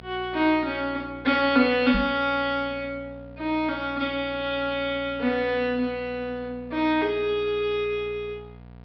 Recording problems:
low-pass filter; nothing above 5.5 kHz
electrical hum; 60 Hz, harmonics up to 1.4 kHz, SNR 21 dB
knock on the microphone; at 2 s; peak 0 dB vs average level

